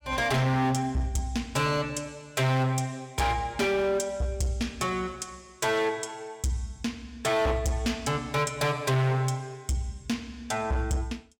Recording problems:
distorted audio; hard clipping, uneven, signal-to-distortion ratio 7 dB

